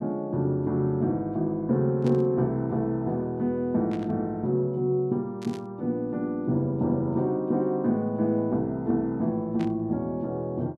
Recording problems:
burst of static; 4 times, first at 2 s; peak -12 dB vs average level

